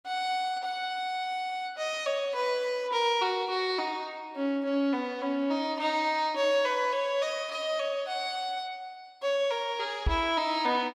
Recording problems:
knock on the microphone; at 10 s; peak +5 dB vs average level

